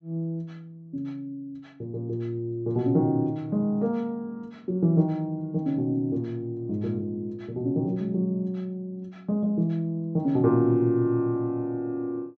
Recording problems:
treble missing; nothing above 7.8 kHz

